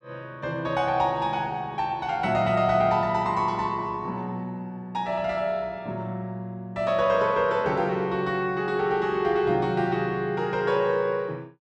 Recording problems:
none

